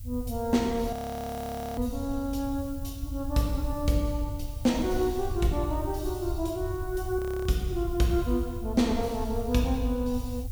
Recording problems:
hiss; slope +2 dB per octave, SNR 20 dB
rumble; below 88 Hz, SNR 8 dB
audio freezing; at 1 s for 1 s and at 7 s

